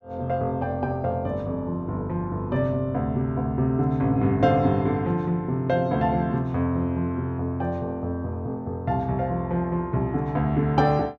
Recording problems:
none

